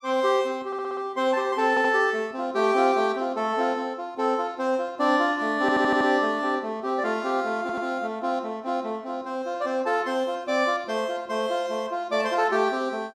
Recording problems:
audio stuttering; 4 times, first at 0.5 s

